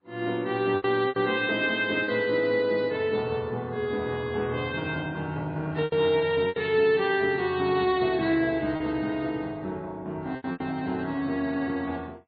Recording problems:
codec artefacts; MP3, log-spectral distance 2 dB, nothing above 4 kHz
packet loss; 5% of the sound replaced, filled with repeated pitch periods

